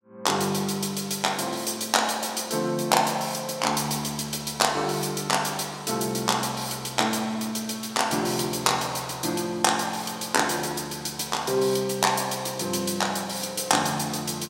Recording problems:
none

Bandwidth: 16.5 kHz